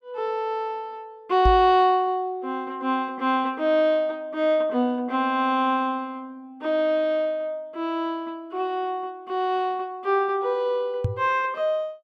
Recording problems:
microphone bump; at 1.5 s and at 11 s; peak +4 dB vs average level

